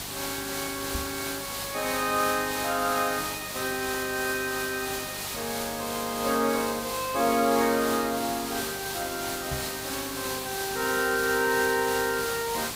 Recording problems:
hum; 50 Hz, harmonics up to 750 Hz, SNR 20 dB
background hiss; slope -1 dB per octave, SNR 4 dB
knock on the microphone; at 1 s and at 9.5 s; peak -2 dB vs average level

